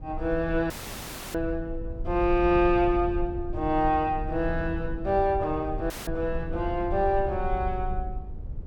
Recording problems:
low-frequency rumble; below 72 Hz, SNR 9 dB
audio cutting out; at 0.5 s for 0.5 s and at 6 s; filled with static

